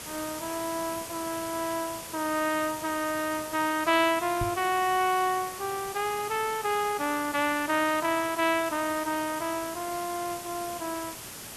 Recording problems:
background hiss; slope -2 dB per octave, SNR 10 dB
microphone bump; at 4.5 s; peak -1 dB vs average level

